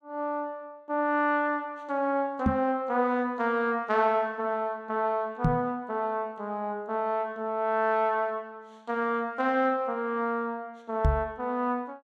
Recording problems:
microphone bump; at 2.5 s, at 5.5 s and at 11 s; peak +7 dB vs average level

